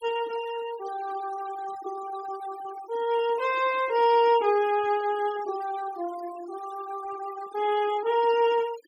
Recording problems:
denoising artefacts; signal-to-artefact ratio 17 dB

